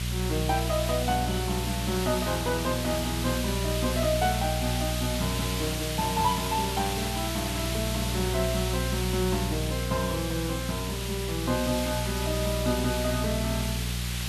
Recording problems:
hum; 60 Hz, harmonics up to 420 Hz, SNR 2 dB
hiss; SNR 3 dB

